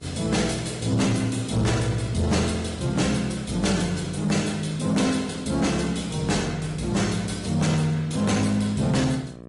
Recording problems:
lossy codec; AAC, then MP3, log-spectral distance 5 dB, nothing above 11 kHz
distorted audio; soft clipping, signal-to-distortion ratio 11 dB
hum; 60 Hz, harmonics up to 1.3 kHz, SNR 19 dB

